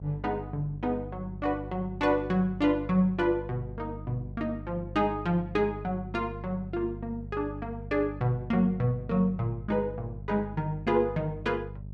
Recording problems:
electrical hum; 50 Hz, harmonics up to 400 Hz, SNR 11 dB

